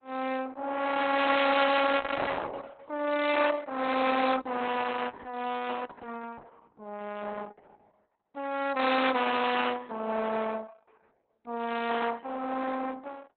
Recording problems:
codec artefacts; Opus, log-spectral distance 6 dB, nothing above 3.9 kHz

